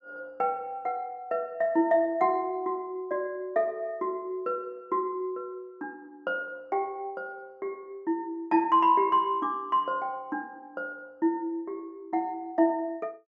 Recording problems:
none

